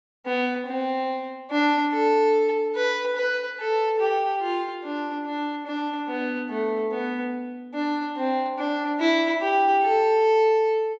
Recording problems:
low-pass filter; nothing above 7.7 kHz

